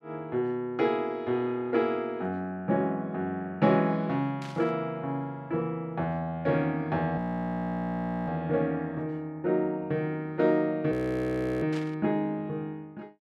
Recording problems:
burst of static; at 4.5 s and at 12 s; peak -9 dB vs average level
frozen audio; at 7 s for 1 s and at 11 s for 0.5 s

